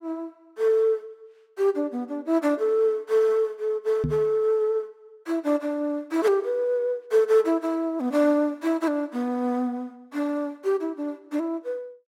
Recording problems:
microphone bump; at 4 s; peak +1 dB vs average level

